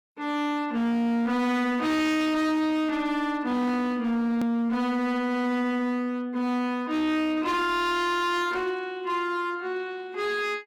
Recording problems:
distortion; hard clipping, signal-to-distortion ratio 8 dB
click at an edit; at 4.5 s

